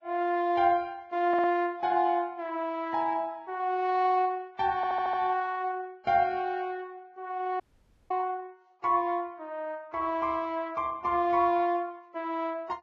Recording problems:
lossy codec; Vorbis, log-spectral distance 2 dB
audio stuttering; at 1.5 s and at 5 s
dropout; at 7.5 s for 0.5 s

